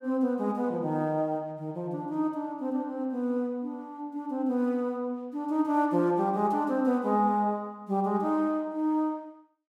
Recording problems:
none

